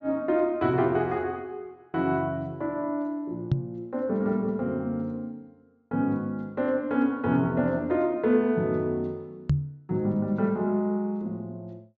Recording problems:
treble missing; nothing above 7.4 kHz
knock on the microphone; at 3.5 s and at 9.5 s; peak +7 dB vs average level

